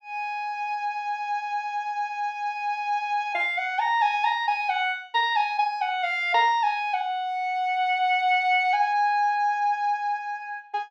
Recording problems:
none

